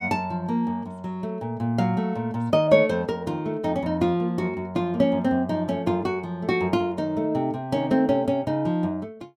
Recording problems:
none

